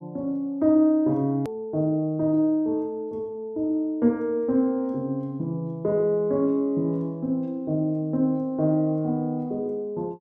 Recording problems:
hard cut with a click; at 1.5 s

